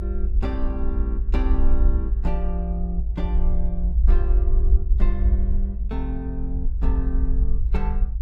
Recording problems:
low-frequency rumble; below 56 Hz, SNR -8 dB

